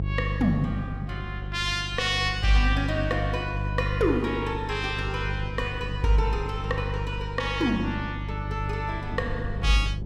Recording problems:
hum; 50 Hz, harmonics up to 350 Hz, SNR 5 dB
wind on the microphone; below 170 Hz, SNR 15 dB

